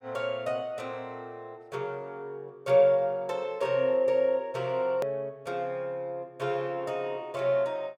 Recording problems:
hard cut with a click; at 5 s

